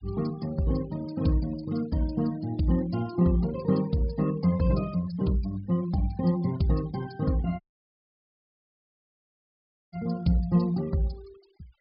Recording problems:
low-pass filter; nothing above 5.5 kHz
noise reduction artefacts; signal-to-artefact ratio 23 dB
dropout; at 7.5 s for 2.5 s

